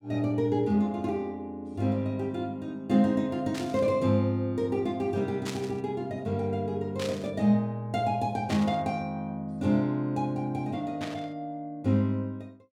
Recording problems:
burst of static; 5 times, first at 3.5 s; peak -4 dB vs average level

